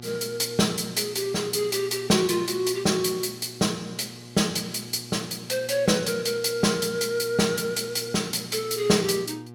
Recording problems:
hum; 60 Hz, harmonics up to 1.2 kHz, SNR 19 dB

